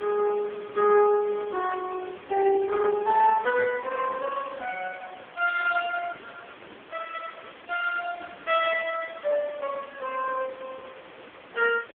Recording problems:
telephone audio; 240 Hz to 3.3 kHz, AMR-NB
background hiss; SNR 20 dB

